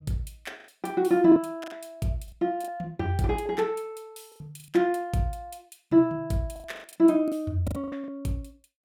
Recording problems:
packet loss; 9% of the sound replaced, filled with the last packet

